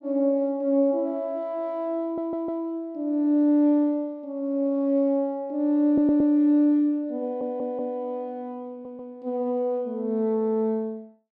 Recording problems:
audio stuttering; 4 times, first at 2 s

